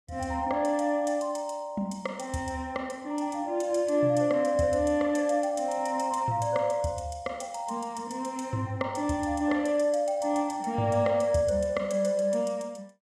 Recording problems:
none

